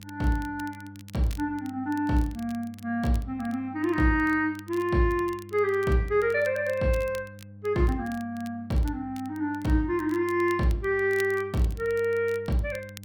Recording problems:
hum; 50 Hz, harmonics up to 500 Hz, SNR 19 dB
crackling; vinyl, SNR 24 dB

